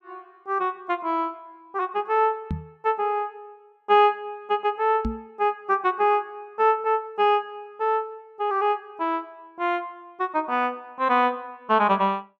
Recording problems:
microphone bump; at 2.5 s and at 5 s; peak 0 dB vs average level

